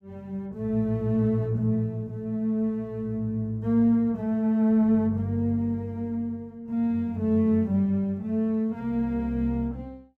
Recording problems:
none

